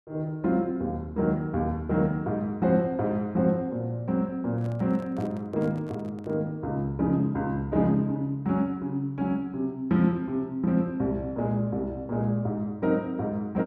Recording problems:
microphone handling noise; from 4.5 to 6.5 s; peak -12 dB vs average level

